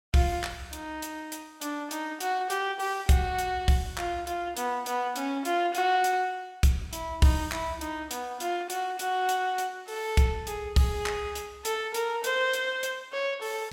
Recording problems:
none

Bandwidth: 16.5 kHz